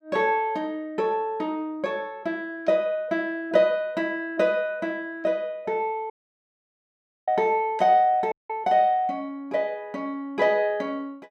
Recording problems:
audio cutting out; at 6 s for 1 s and at 8.5 s

